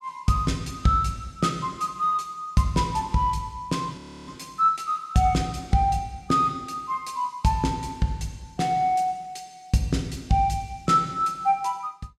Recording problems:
audio freezing; at 4 s

